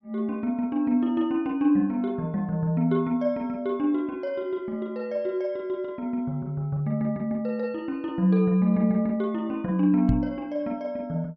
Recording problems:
microphone thump; at 10 s; peak +5 dB vs average level

